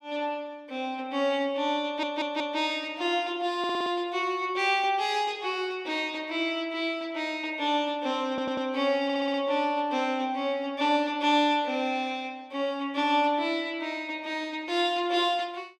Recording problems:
audio stuttering; 4 times, first at 2 s

